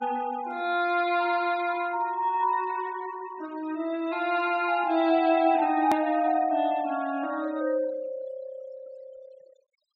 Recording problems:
low-pass filter; nothing above 8 kHz
denoising artefacts; signal-to-artefact ratio 22 dB
edit click; at 6 s

